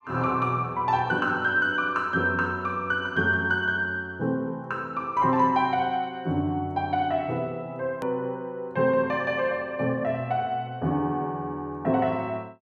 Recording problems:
edit click; at 8 s

